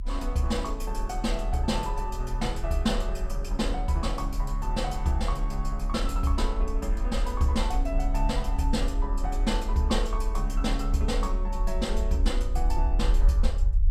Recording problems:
low-frequency rumble; below 42 Hz, strongest tone 34 Hz, SNR 0 dB

